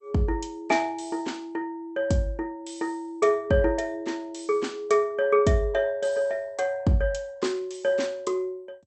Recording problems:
lossy compression; MP2, log-spectral distance 2 dB, nothing above 8.5 kHz

